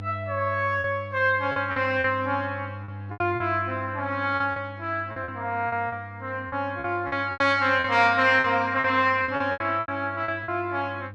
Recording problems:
hum; 50 Hz, harmonics up to 700 Hz, SNR 15 dB
packet loss; 11% of the sound replaced, filled with repeated pitch periods

